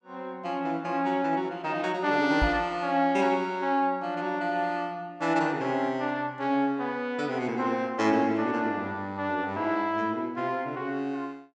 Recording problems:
knock on the microphone; at 2.5 s; peak +2 dB vs average level

